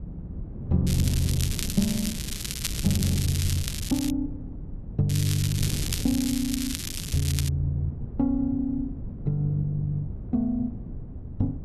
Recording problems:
wind on the microphone; below 170 Hz, SNR 7 dB
crackle; from 1 to 4 s and from 5 to 7.5 s; loose cable, SNR 5 dB

